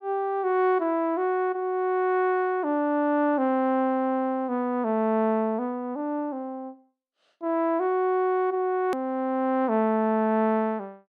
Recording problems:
edit click; at 9 s

